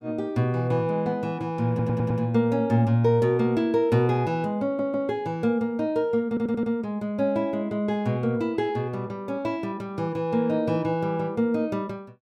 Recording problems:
audio stuttering; at 1.5 s, at 4.5 s and at 6.5 s

